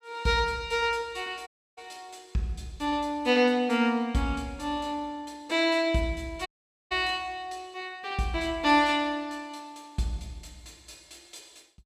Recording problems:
audio cutting out; at 1.5 s and at 6.5 s

